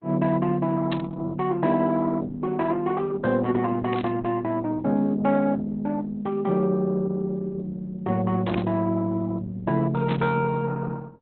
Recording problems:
lossy codec; Opus, log-spectral distance 3 dB, nothing above 4 kHz
burst of static; 4 times, first at 1 s; peak -5 dB vs average level

